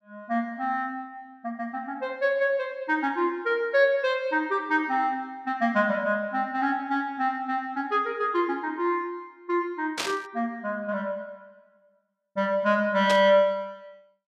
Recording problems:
static burst; at 10 s and at 13 s; peak +2 dB vs average level

